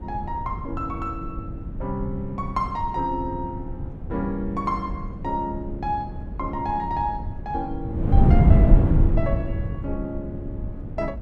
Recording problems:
wind on the microphone; below 140 Hz, SNR -3 dB

